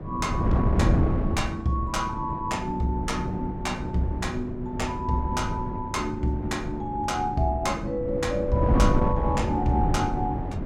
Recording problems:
electrical hum; 50 Hz, harmonics up to 700 Hz, SNR 13 dB
wind on the microphone; below 250 Hz, SNR 1 dB

